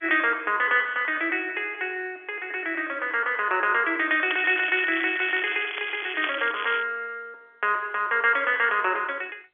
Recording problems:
telephone audio; 280 Hz to 3.4 kHz, G.711
crackle; from 4.5 to 7 s; loose cable, SNR 10 dB

